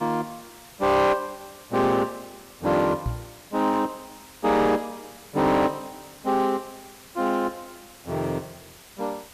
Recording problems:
distorted audio; hard clipping, uneven, signal-to-distortion ratio 11 dB
hiss; slope -1 dB per octave, SNR 21 dB
knock on the microphone; at 3 s; peak 0 dB vs average level

